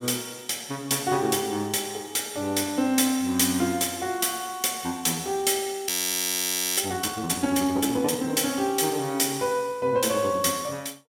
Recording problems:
frozen audio; at 6 s for 1 s

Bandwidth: 16.5 kHz